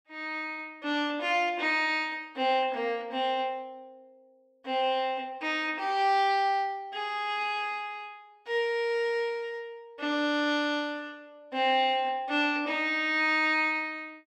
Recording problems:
none

